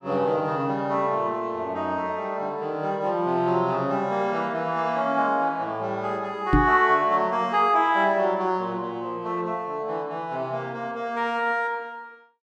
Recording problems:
knock on the microphone; at 6.5 s; peak +7 dB vs average level

